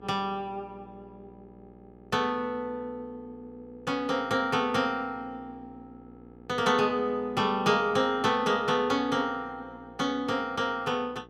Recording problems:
hum; 60 Hz, harmonics up to 1.3 kHz, SNR 24 dB

